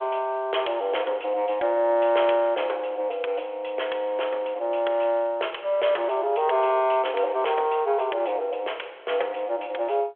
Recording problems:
phone line; 370 Hz to 3.4 kHz, G.726

